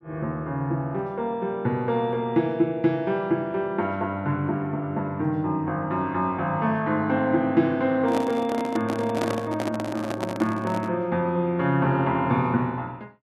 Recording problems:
handling noise; from 8 to 11 s; peak +1 dB vs average level

